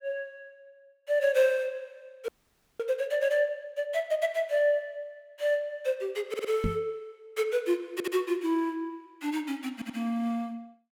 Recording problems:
audio freezing; at 2.5 s for 0.5 s
stutter; at 6.5 s, at 8 s and at 9.5 s
microphone thump; at 6.5 s; peak +3 dB vs average level

